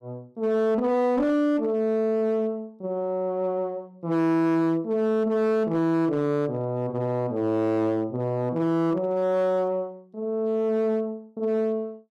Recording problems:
distorted audio; hard clipping, signal-to-distortion ratio 12 dB

